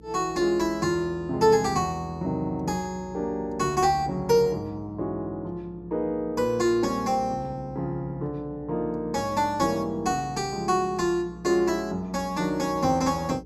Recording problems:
hum; 60 Hz, harmonics up to 480 Hz, SNR 21 dB

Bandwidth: 14 kHz